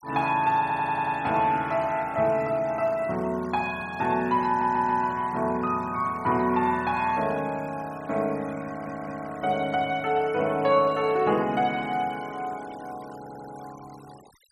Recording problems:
denoising artefacts; signal-to-artefact ratio 23 dB
stutter; 4 times, first at 0.5 s

